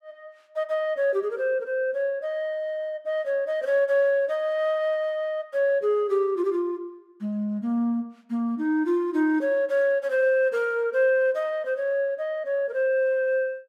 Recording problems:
none

